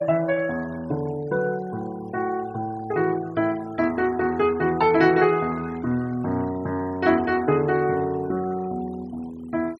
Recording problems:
noise reduction artefacts; signal-to-artefact ratio 22 dB

